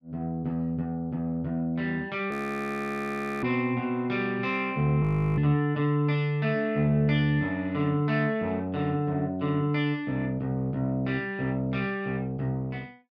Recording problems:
frozen audio; at 2.5 s for 1 s and at 5 s

